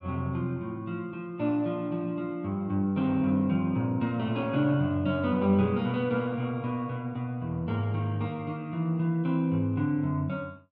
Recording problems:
none

